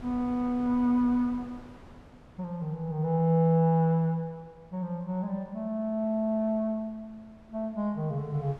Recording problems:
wind on the microphone; below 630 Hz, SNR 24 dB

